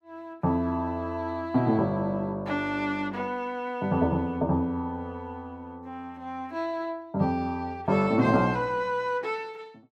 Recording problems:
none

